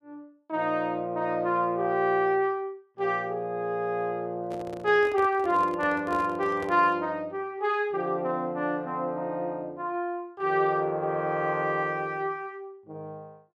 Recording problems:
handling noise; from 4.5 to 7 s; peak -7 dB vs average level

